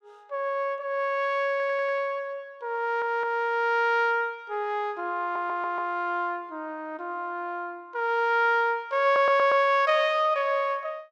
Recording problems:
audio stuttering; 4 times, first at 1.5 s

